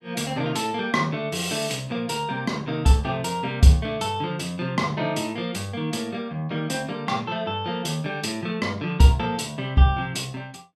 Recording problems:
none

